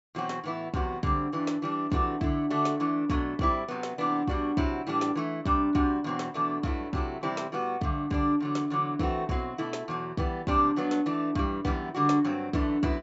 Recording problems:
treble missing; nothing above 8 kHz

